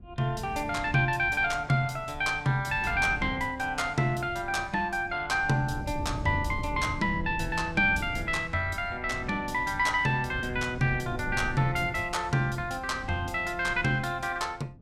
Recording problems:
wind on the microphone; below 160 Hz, SNR 13 dB

